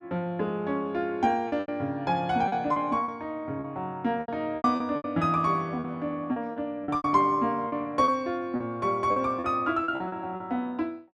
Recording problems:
lost packets; 11% of the sound replaced, filled with repeated pitch periods

